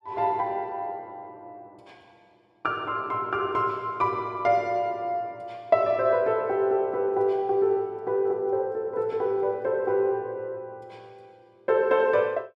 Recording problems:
none

